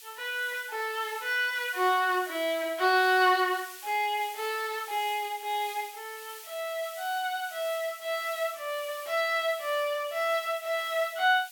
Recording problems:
hiss; SNR 16 dB

